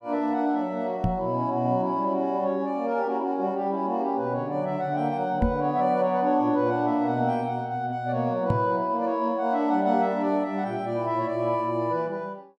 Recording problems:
microphone thump; at 1 s, at 5.5 s and at 8.5 s; peak +4 dB vs average level

